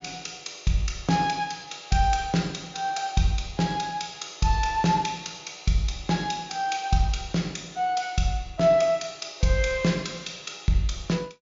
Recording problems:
low-pass filter; nothing above 7.2 kHz

